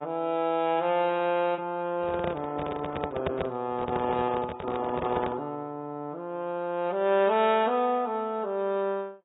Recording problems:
lossy compression; AAC, log-spectral distance 2 dB, nothing above 3.3 kHz
microphone handling noise; from 2 to 5.5 s; peak 0 dB vs average level

